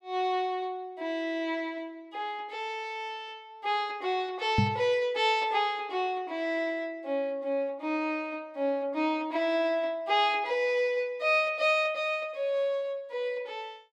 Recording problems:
knock on the microphone; at 4.5 s; peak +7 dB vs average level

